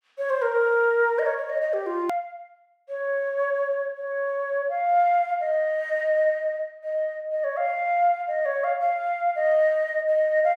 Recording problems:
edit click; at 2 s

